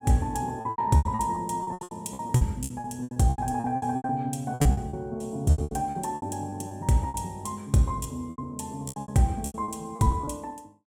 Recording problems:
lost packets; 21% of the sound replaced, filled with repeated pitch periods

